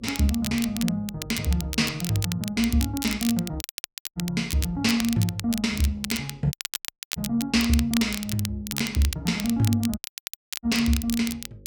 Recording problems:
hum; 50 Hz, harmonics up to 550 Hz, SNR 26 dB
crackle; vinyl, SNR 8 dB
dropout; at 3.5 s for 0.5 s, at 6.5 s for 0.5 s and at 10 s for 0.5 s

